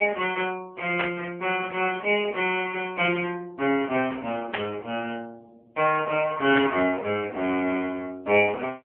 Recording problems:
telephone audio; 300 Hz to 3.1 kHz, AMR-NB
static burst; at 1 s, at 4.5 s and at 6.5 s; peak +2 dB vs average level

